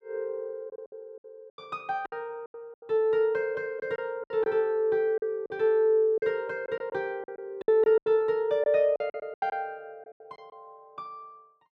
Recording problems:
packet loss; 12% of the sound replaced, filled with silence

